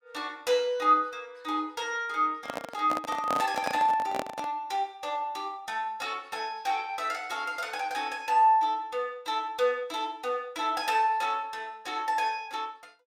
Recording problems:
microphone handling noise; from 2.5 to 4.5 s; peak +1 dB vs average level

